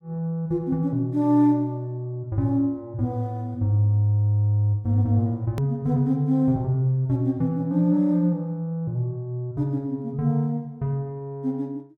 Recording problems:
hard cut with a click; at 5.5 s

